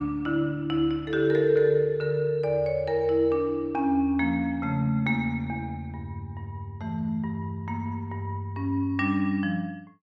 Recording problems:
none

